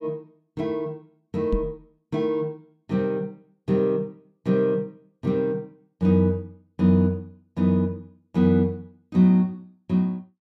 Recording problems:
microphone bump; at 1.5 s; peak +1 dB vs average level

